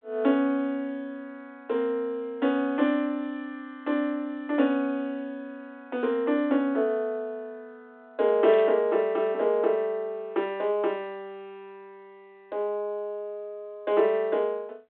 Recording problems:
phone line; 260 Hz to 3.6 kHz, G.726
static burst; at 8.5 s; peak -12 dB vs average level

